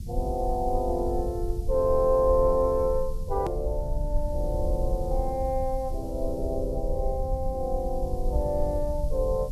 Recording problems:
hiss; SNR 27 dB
rumble; below 62 Hz, SNR 5 dB
hard cut with a click; at 3.5 s

